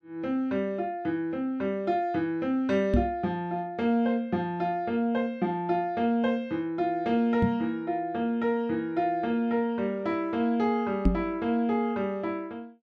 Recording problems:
microphone bump; at 3 s, at 7.5 s and at 11 s; peak +8 dB vs average level

